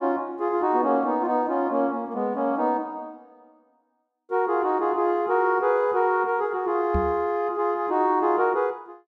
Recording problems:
microphone thump; at 7 s; peak 0 dB vs average level

